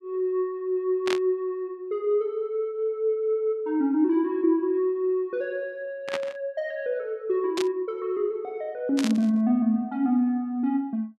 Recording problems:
burst of static; 4 times, first at 1 s; peak -1 dB vs average level

